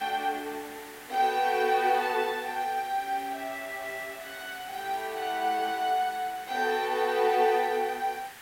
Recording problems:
hiss; SNR 16 dB

